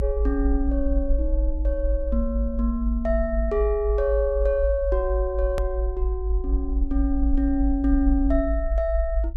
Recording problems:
rumble; below 54 Hz, strongest tone 54 Hz, SNR 1 dB
click at an edit; at 5.5 s

